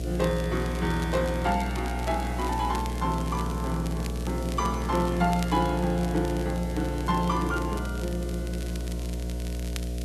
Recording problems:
electrical hum; 60 Hz, harmonics up to 720 Hz, SNR 4 dB
hiss; slope +3 dB per octave, SNR 19 dB
crackling; vinyl, SNR 16 dB

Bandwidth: 12.5 kHz